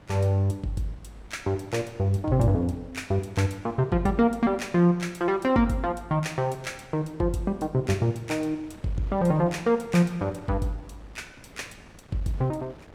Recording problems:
wind on the microphone; below 770 Hz, SNR 24 dB

